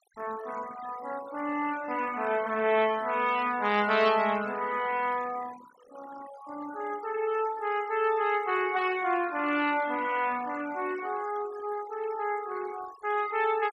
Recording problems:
denoising artefacts; signal-to-artefact ratio 17 dB

